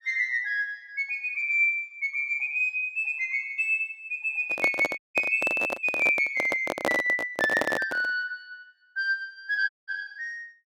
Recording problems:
handling noise; from 4.5 to 8 s; peak +3 dB vs average level
dropout; at 5 s and at 9.5 s

